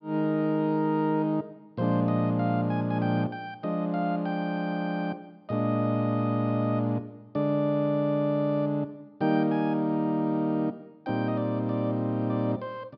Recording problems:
treble missing; nothing above 5.5 kHz

